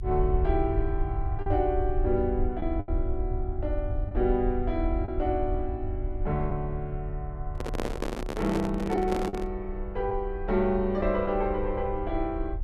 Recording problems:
rumble; below 68 Hz, SNR 4 dB
lost packets; 2% of the sound replaced, filled with the last packet
microphone handling noise; from 7.5 to 9.5 s; peak +2 dB vs average level

